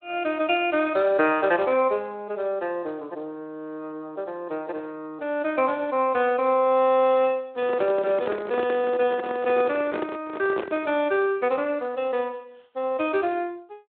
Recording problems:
telephone audio; 260 Hz to 3.7 kHz, Speex
microphone handling noise; from 7.5 to 11 s; peak -1 dB vs average level

